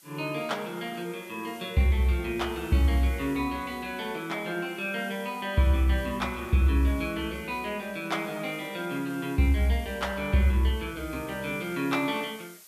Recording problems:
background hiss; slope +2 dB per octave, SNR 22 dB

